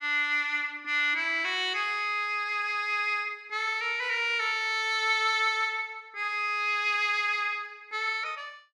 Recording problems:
none

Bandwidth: 14 kHz